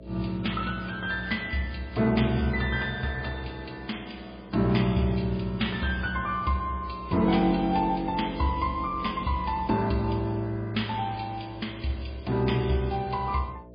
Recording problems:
lossy compression; MP3, log-spectral distance 5 dB
hum; 60 Hz, harmonics up to 660 Hz, SNR 19 dB

